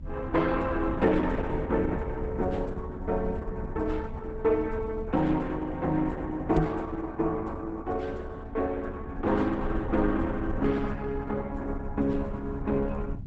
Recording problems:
lossy codec; Opus, log-spectral distance 3 dB, nothing above 7.8 kHz
low-frequency rumble; below 96 Hz, SNR 9 dB
knock on the microphone; at 6.5 s; peak +5 dB vs average level

